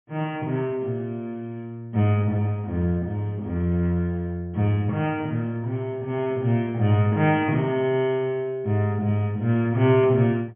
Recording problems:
treble missing; nothing above 3.3 kHz

